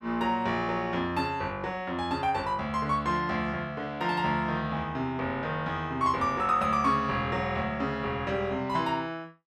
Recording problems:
none

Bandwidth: 14 kHz